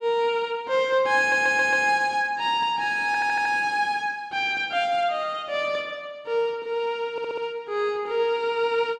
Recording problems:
stutter; at 1 s, at 3 s and at 7 s

